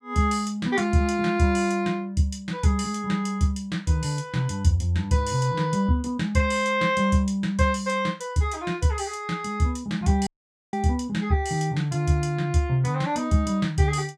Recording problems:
dropout; at 10 s

